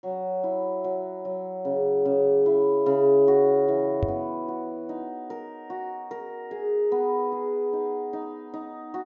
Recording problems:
treble cut off; nothing above 7.5 kHz
microphone bump; at 4 s; peak +1 dB vs average level

